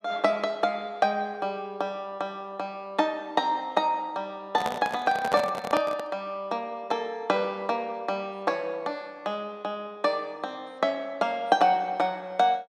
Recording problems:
handling noise; from 4.5 to 6 s; peak +2 dB vs average level

